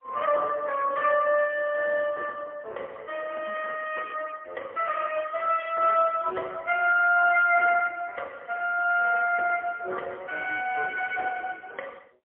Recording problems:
telephone audio; 370 Hz to 2.9 kHz, AMR-NB, then MP3

